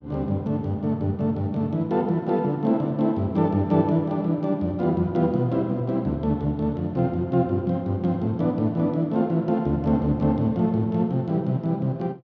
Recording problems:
none

